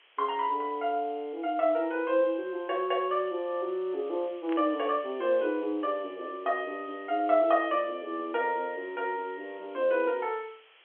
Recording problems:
telephone audio; 280 Hz to 3.3 kHz, G.711
background hiss; SNR 28 dB
burst of static; at 4.5 s; peak -9 dB vs average level

